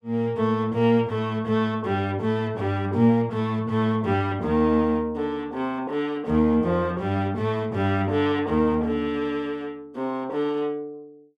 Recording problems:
none

